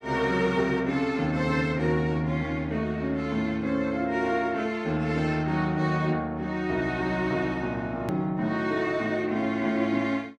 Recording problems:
hard cut with a click; at 8 s

